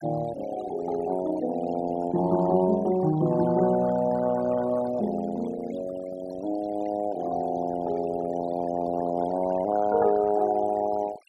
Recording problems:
noise reduction artefacts; signal-to-artefact ratio 16 dB

